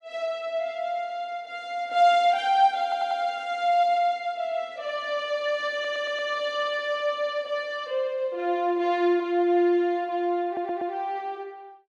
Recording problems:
audio stuttering; at 3 s, at 5.5 s and at 10 s

